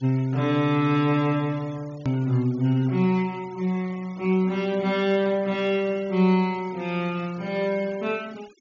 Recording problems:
treble cut off; nothing above 7 kHz
noise reduction artefacts; signal-to-artefact ratio 24 dB
edit click; at 2 s

